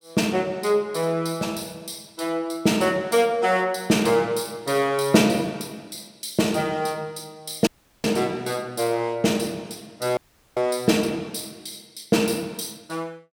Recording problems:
audio cutting out; at 7.5 s and at 10 s

